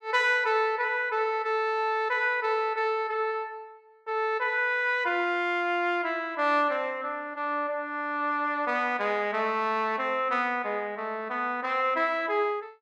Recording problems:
none

